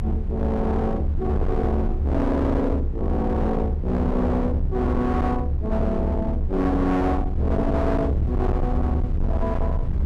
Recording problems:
distortion; hard clipping, signal-to-distortion ratio 8 dB
low-frequency rumble; below 100 Hz, SNR 1 dB
wind on the microphone; below 140 Hz, SNR 12 dB

